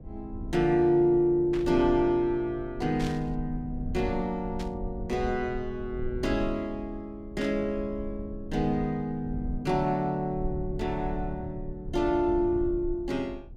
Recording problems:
low-frequency rumble; below 84 Hz, SNR 12 dB
static burst; 4 times, first at 1.5 s; peak -8 dB vs average level

